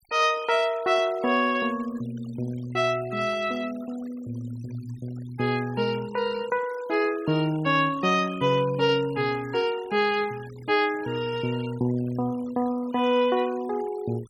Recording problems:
denoising artefacts; signal-to-artefact ratio 21 dB

